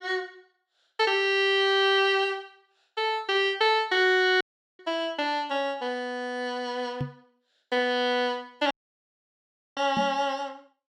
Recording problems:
audio cutting out; at 4.5 s and at 8.5 s for 1 s
knock on the microphone; at 7 s and at 10 s; peak -2 dB vs average level

